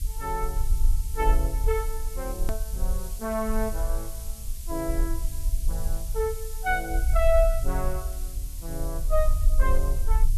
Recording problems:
hiss; SNR 11 dB
low-frequency rumble; below 46 Hz, strongest tone 20 Hz, SNR -1 dB
click at an edit; at 2.5 s

